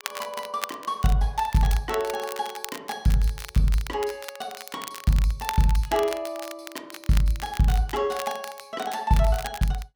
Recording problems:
crackle; vinyl, SNR 13 dB

